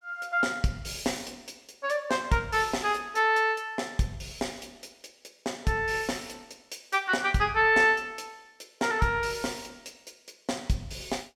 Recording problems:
none

